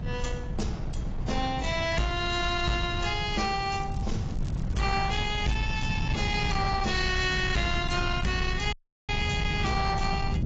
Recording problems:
codec artefacts; AAC, log-spectral distance 4 dB, nothing above 7.3 kHz
distorted audio; soft clipping, signal-to-distortion ratio 11 dB
rumble; below 150 Hz, SNR 4 dB
wind on the microphone; below 610 Hz, SNR 17 dB
crackle; from 3 to 5.5 s and from 7 to 8.5 s; loose cable, SNR 25 dB
audio cutting out; at 8.5 s

